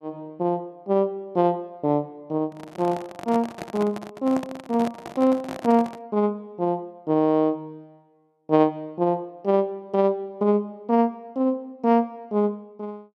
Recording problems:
microphone handling noise; from 2.5 to 6 s; peak -4 dB vs average level

